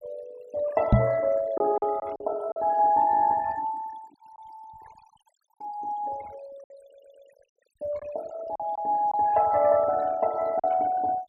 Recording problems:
denoising artefacts; signal-to-artefact ratio 21 dB
packet loss; 4% of the sound replaced, filled with silence
microphone thump; at 1 s; peak +9 dB vs average level
stutter; at 7 s

